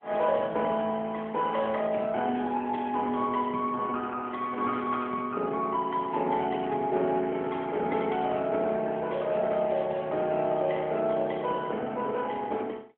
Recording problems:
phone line; 220 Hz to 3.3 kHz, AMR-NB

